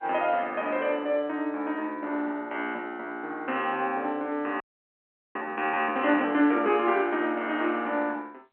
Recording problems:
phone line; 220 Hz to 3.2 kHz, G.711
audio freezing; at 4.5 s for 1 s

